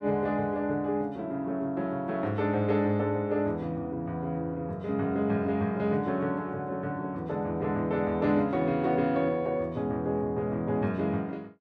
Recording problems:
none

